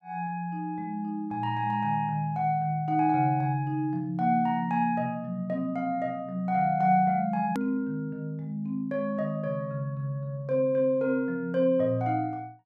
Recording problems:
edit click; at 7.5 s

